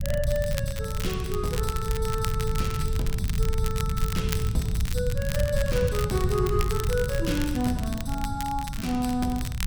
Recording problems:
rumble; below 120 Hz, SNR 0 dB
crackle; vinyl, SNR 9 dB

